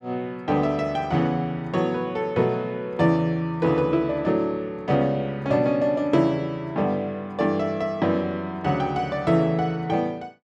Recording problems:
none

